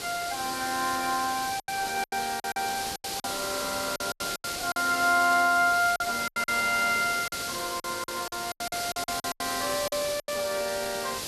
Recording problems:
background hiss; SNR 5 dB
packet loss; 12% of the sound replaced, filled with silence

